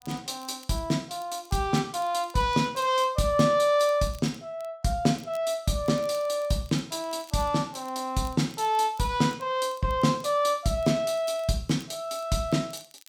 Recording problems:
crackling; vinyl, SNR 27 dB

